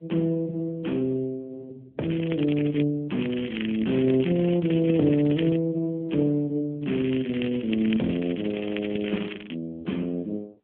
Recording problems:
phone line; 110 Hz to 3.4 kHz, AMR-NB
crackling; at 2 s, from 3 to 5.5 s and from 7 to 9.5 s; loose cable, SNR 12 dB

